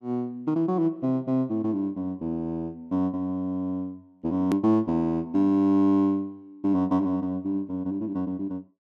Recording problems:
edit click; at 4.5 s

